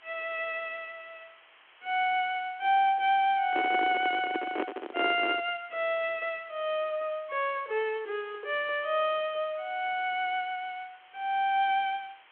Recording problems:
phone line; 260 Hz to 3.4 kHz, G.726
hiss; SNR 27 dB
microphone handling noise; from 3.5 to 5.5 s; peak +1 dB vs average level

